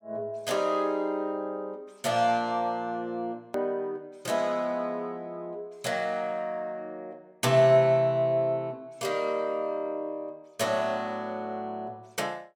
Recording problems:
edit click; at 3.5 s

